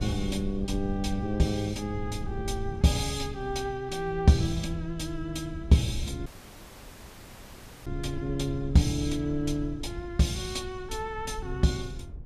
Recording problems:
wind noise; below 100 Hz, SNR 11 dB
audio cutting out; at 6.5 s for 1.5 s

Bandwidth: 14.5 kHz